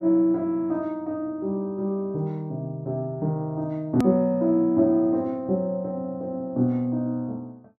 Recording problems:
click at an edit; at 4 s

